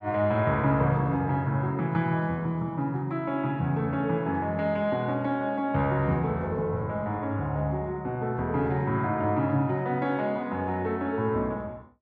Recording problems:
none

